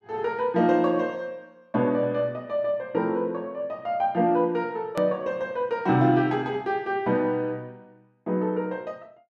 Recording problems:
click at an edit; at 5 s

